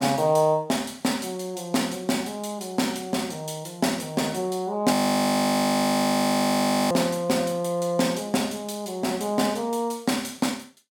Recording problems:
audio freezing; at 5 s for 2 s

